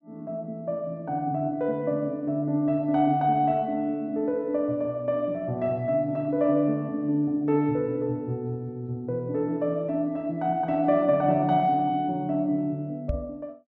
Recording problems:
treble cut off; nothing above 8 kHz
knock on the microphone; at 13 s; peak +1 dB vs average level

